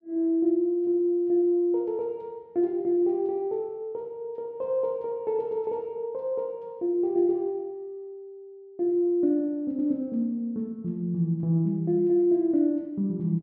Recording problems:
none

